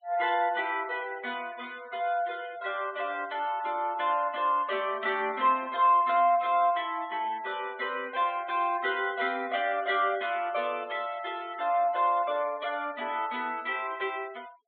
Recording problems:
treble cut off; nothing above 4 kHz
noise reduction artefacts; signal-to-artefact ratio 23 dB

